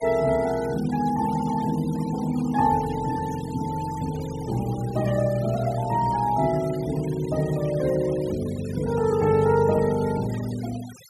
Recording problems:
denoising artefacts; signal-to-artefact ratio 19 dB

